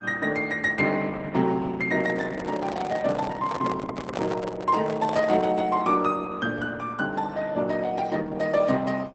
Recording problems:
lossy compression; Opus, log-spectral distance 3 dB, nothing above 8.2 kHz
microphone handling noise; from 2 to 5.5 s; peak 0 dB vs average level

